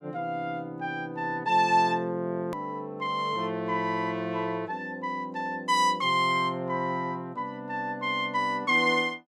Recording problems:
click at an edit; at 2.5 s

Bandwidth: 15.5 kHz